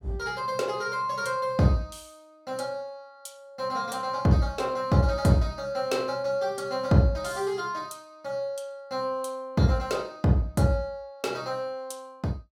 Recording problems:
none

